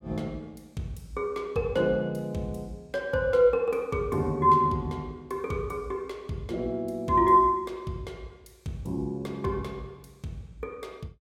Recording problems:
none

